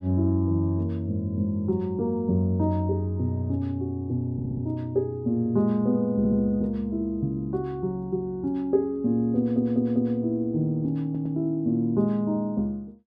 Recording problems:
audio stuttering; 4 times, first at 4.5 s

